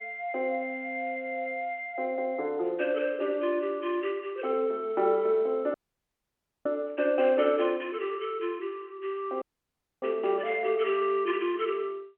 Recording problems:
telephone audio; 280 Hz to 3.1 kHz, G.711
dropout; at 5.5 s for 1 s and at 9.5 s for 0.5 s

